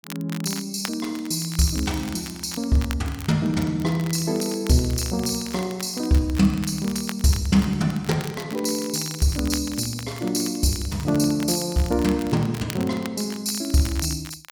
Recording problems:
crackling; vinyl, SNR 16 dB

